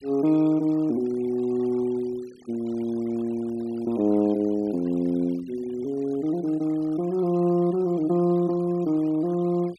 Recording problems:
denoising artefacts; signal-to-artefact ratio 25 dB

